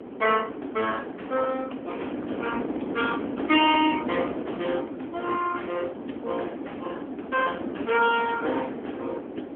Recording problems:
phone line; 240 Hz to 3.4 kHz, AMR-NB
wind noise; below 470 Hz, SNR 6 dB

